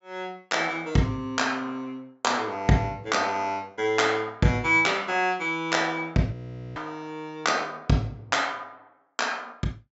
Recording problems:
low-pass filter; nothing above 8 kHz
frozen audio; at 6.5 s

